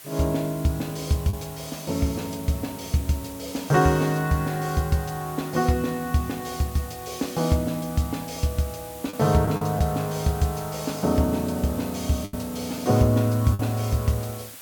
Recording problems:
background hiss; slope 0 dB per octave, SNR 15 dB
packet loss; 1.7% of the sound replaced, filled with the last packet

